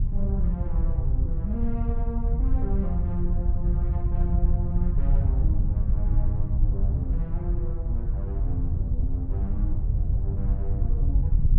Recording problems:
wind on the microphone; below 80 Hz, SNR -9 dB

